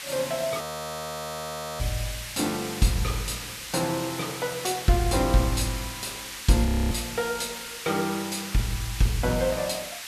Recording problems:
background hiss; SNR 7 dB
audio freezing; at 0.5 s for 1 s and at 6.5 s

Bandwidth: 14 kHz